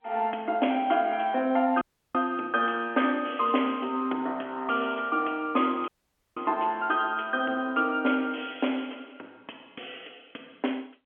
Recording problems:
telephone audio; 220 Hz to 3.4 kHz, G.711
audio cutting out; at 2 s and at 6 s

